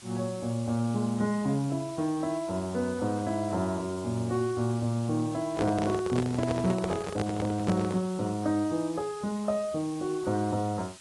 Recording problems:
lossy compression; AAC, log-spectral distance 6 dB
hiss; slope 0 dB per octave, SNR 18 dB
microphone handling noise; from 5.5 to 8 s; peak +2 dB vs average level

